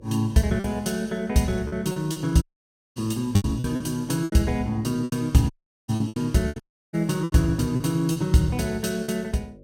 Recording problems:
hum; 50 Hz, harmonics up to 600 Hz, SNR 25 dB
lost packets; 11% of the sound replaced, filled with repeated pitch periods
audio cutting out; at 2.5 s for 0.5 s, at 5.5 s and at 6.5 s

